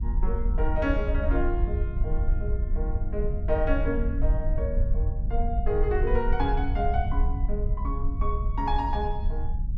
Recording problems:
rumble; below 62 Hz, SNR -2 dB

